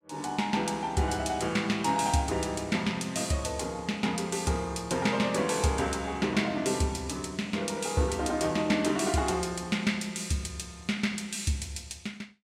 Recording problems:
none

